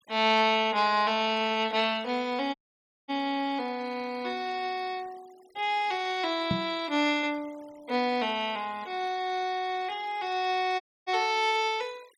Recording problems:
denoising artefacts; signal-to-artefact ratio 24 dB
dropout; at 2.5 s for 0.5 s and at 11 s
microphone bump; at 6.5 s; peak +3 dB vs average level

